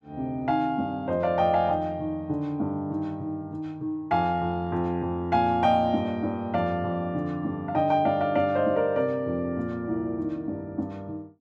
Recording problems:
none

